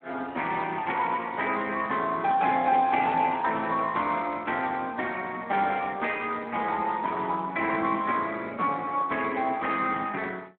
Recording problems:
phone line; 220 Hz to 3.9 kHz, Speex

